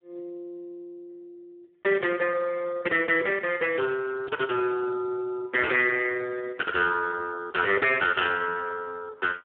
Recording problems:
telephone audio; 340 Hz to 2.6 kHz, Speex

